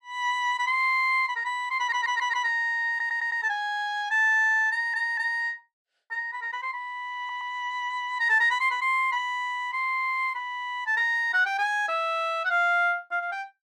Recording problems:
stutter; 4 times, first at 2 s

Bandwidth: 13 kHz